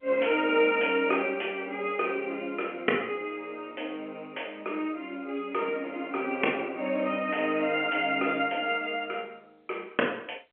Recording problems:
phone line; 260 Hz to 3.1 kHz, G.711

